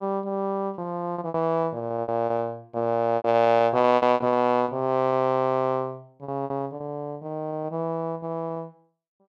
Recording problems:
lost packets; 12% of the sound replaced, filled with repeated pitch periods

